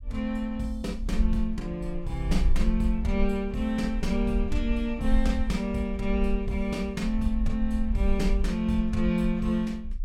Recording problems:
low-frequency rumble; below 52 Hz, SNR 4 dB

